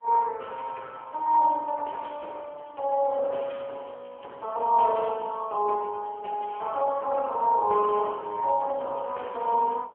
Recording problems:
phone line; 320 Hz to 3.2 kHz, AMR-NB

